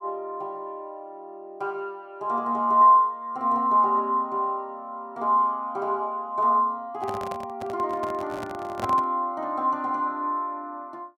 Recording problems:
handling noise; from 7 to 9 s; peak -5 dB vs average level

